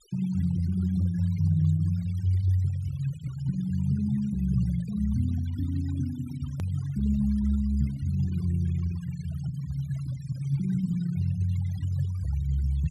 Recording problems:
noise reduction artefacts; signal-to-artefact ratio 22 dB
hard cut with a click; at 6.5 s

